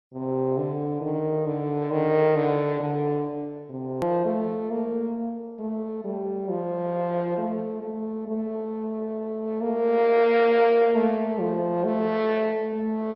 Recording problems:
codec artefacts; MP2, log-spectral distance 2 dB, nothing above 13.1 kHz
hard cut with a click; at 4 s

